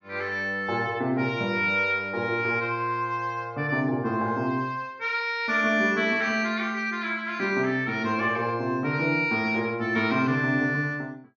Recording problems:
treble missing; nothing above 6.8 kHz

